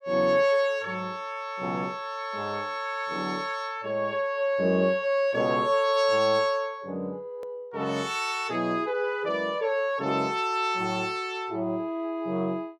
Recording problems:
edit click; at 7.5 s

